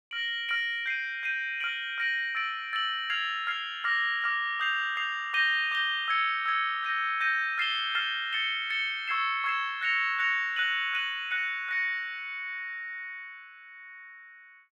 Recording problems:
none

